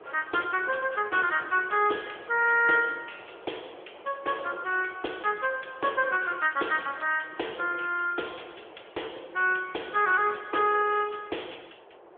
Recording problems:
phone line; 300 Hz to 3.4 kHz, AMR-NB
wind on the microphone; below 920 Hz, SNR 22 dB

